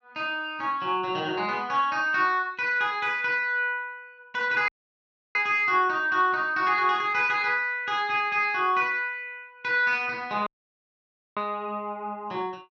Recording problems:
audio cutting out; at 4.5 s for 0.5 s and at 10 s for 1 s

